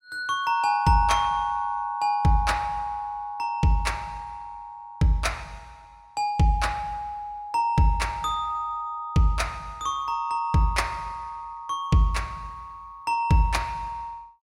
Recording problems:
none

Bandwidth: 16 kHz